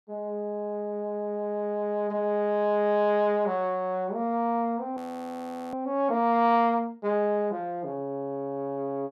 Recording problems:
audio freezing; at 5 s for 1 s

